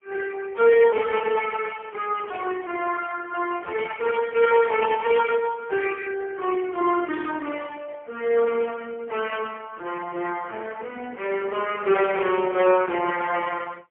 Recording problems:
telephone audio; 260 Hz to 3.2 kHz, AMR-NB, then MP3

